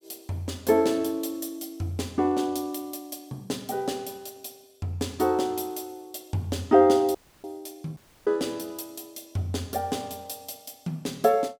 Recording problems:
audio cutting out; at 7 s and at 8 s

